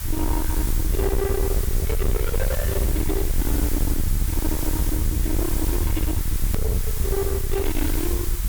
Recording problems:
distorted audio; soft clipping, signal-to-distortion ratio 6 dB
background hiss; slope 0 dB per octave, SNR 4 dB
low-frequency rumble; below 90 Hz, SNR -2 dB
hard cut with a click; at 6.5 s

